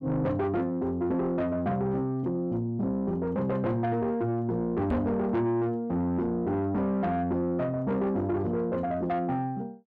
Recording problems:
distorted audio; soft clipping, signal-to-distortion ratio 10 dB
microphone thump; at 5 s; peak +5 dB vs average level

